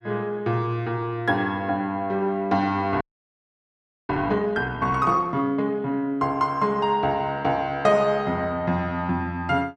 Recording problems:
frozen audio; at 3 s for 1 s

